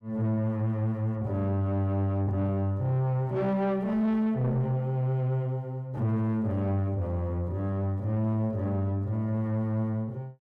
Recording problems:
distortion; soft clipping, signal-to-distortion ratio 11 dB

